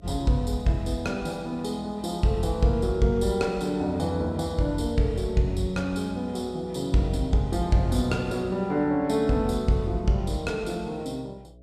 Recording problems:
hum; 60 Hz, harmonics up to 660 Hz, SNR 24 dB

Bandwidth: 14.5 kHz